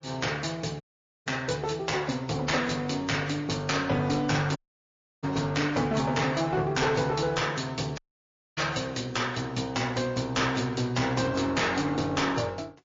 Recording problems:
codec artefacts; MP3, log-spectral distance 4 dB
distortion; hard clipping, uneven, signal-to-distortion ratio 11 dB
dropout; at 1 s, at 4.5 s for 0.5 s and at 8 s for 0.5 s

